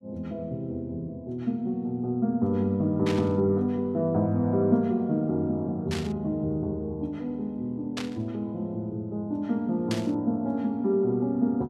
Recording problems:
burst of static; 4 times, first at 3 s; peak -2 dB vs average level

